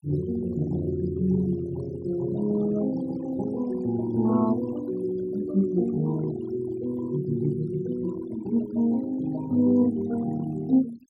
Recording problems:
denoising artefacts; signal-to-artefact ratio 20 dB

